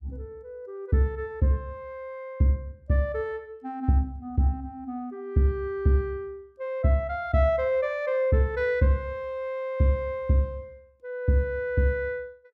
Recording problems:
none

